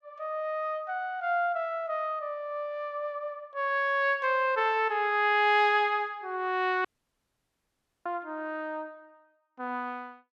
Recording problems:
dropout; at 7 s for 1 s

